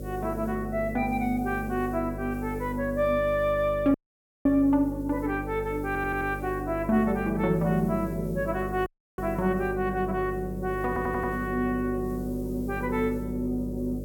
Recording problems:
hum; 50 Hz, harmonics up to 600 Hz, SNR 9 dB
background hiss; SNR 26 dB
dropout; at 4 s for 0.5 s and at 9 s
audio stuttering; at 6 s and at 11 s

